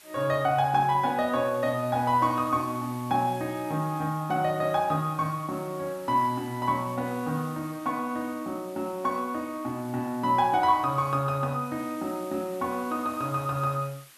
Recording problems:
background hiss; slope +1 dB per octave, SNR 21 dB

